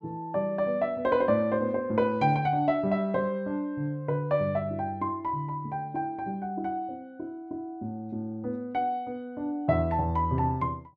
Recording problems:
none

